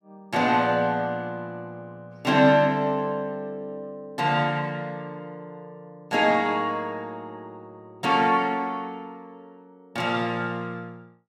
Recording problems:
none

